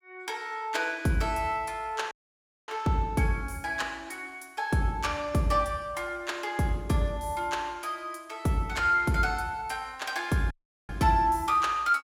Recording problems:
dropout; at 2 s for 0.5 s and at 11 s

